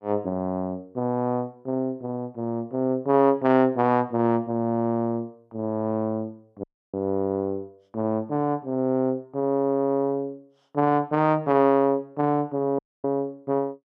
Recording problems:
dropout; at 6.5 s and at 13 s

